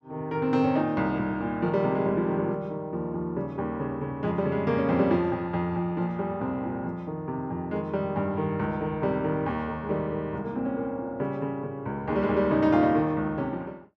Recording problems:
none

